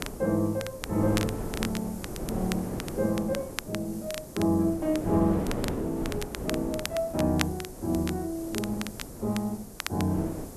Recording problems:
hiss; SNR 18 dB
wind noise; below 480 Hz, SNR 8 dB
crackle; vinyl, SNR 10 dB

